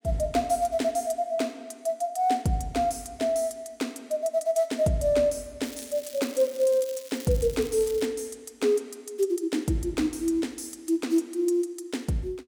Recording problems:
crackling; from 5.5 to 8 s; loose cable, SNR 16 dB

